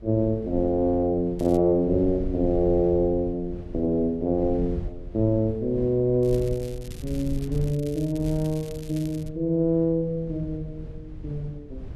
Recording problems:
rumble; below 90 Hz, SNR 13 dB
crackling; at 1.5 s and from 6 to 9.5 s; loose cable, SNR 23 dB

